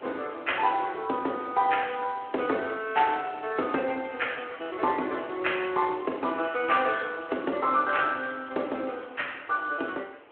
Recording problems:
phone line; 220 Hz to 3.3 kHz, Speex
wind noise; below 2 kHz, SNR 20 dB

